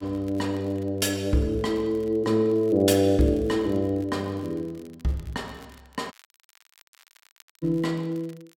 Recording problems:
crackling; vinyl, SNR 30 dB
dropout; at 6 s for 1.5 s

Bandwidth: 16 kHz